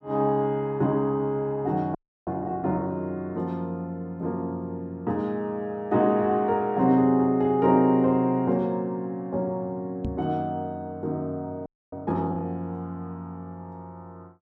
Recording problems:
frozen audio; at 2 s and at 12 s
knock on the microphone; at 10 s; peak -2 dB vs average level

